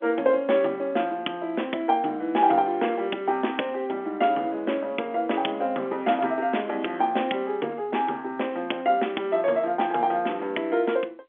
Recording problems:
telephone audio; 240 Hz to 3.4 kHz, G.711

